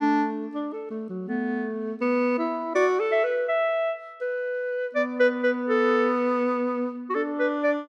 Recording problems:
none

